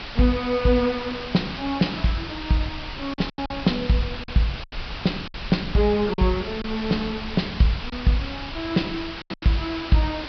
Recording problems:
low-pass filter; nothing above 5.5 kHz
background hiss; SNR 10 dB
low-frequency rumble; below 100 Hz, SNR 16 dB
wind on the microphone; below 650 Hz, SNR 25 dB
lost packets; 5% of the sound replaced, filled with silence

